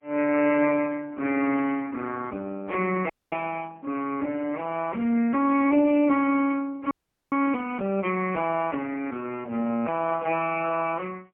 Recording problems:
telephone audio; 190 Hz to 3 kHz, AMR-NB, then MP3
frozen audio; at 3 s and at 7 s

